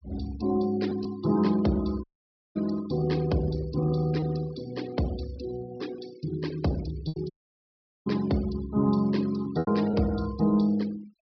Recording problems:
treble cut off; nothing above 5.5 kHz
noise reduction artefacts; signal-to-artefact ratio 19 dB
packet loss; 3% of the sound replaced, filled with repeated pitch periods
audio cutting out; at 2 s for 0.5 s and at 7.5 s for 1 s

